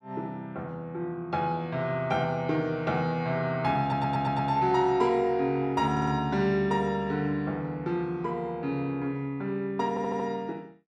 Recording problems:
stutter; at 4 s, at 6 s and at 10 s

